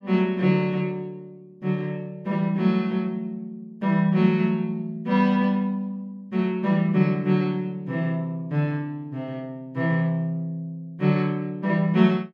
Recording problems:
none

